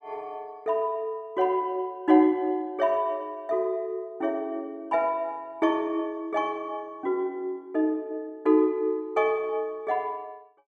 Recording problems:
none

